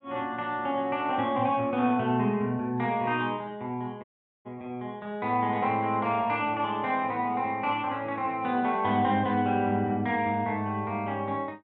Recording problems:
audio cutting out; at 4 s

